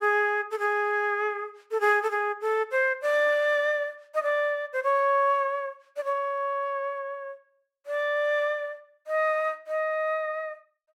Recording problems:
none

